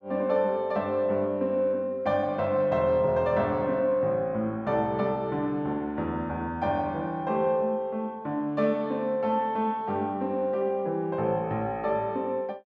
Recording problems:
none

